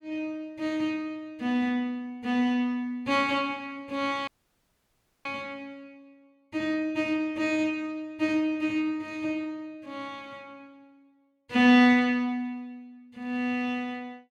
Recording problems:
audio cutting out; at 4.5 s for 1 s

